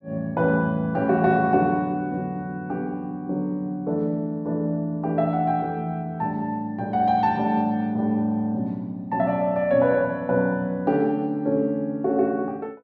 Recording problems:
none

